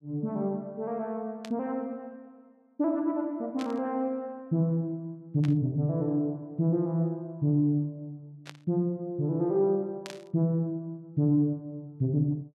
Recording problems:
burst of static; 5 times, first at 1.5 s; peak -8 dB vs average level

